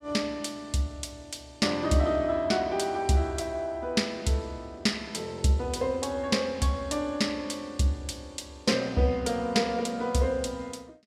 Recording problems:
none

